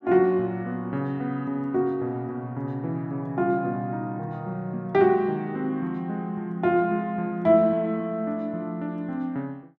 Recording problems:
none

